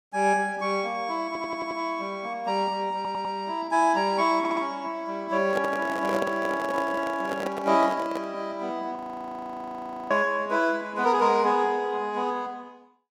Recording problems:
audio stuttering; at 1.5 s, at 3 s and at 4.5 s
handling noise; from 5.5 to 8.5 s; peak -1 dB vs average level
frozen audio; at 9 s for 1 s

